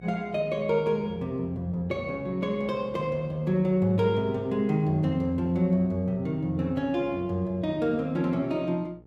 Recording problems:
electrical hum; 60 Hz, harmonics up to 900 Hz, SNR 24 dB

